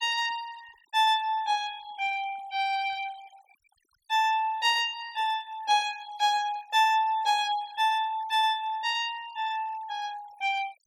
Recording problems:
denoising artefacts; signal-to-artefact ratio 21 dB

